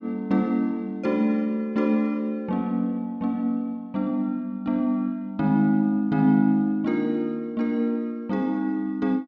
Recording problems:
none

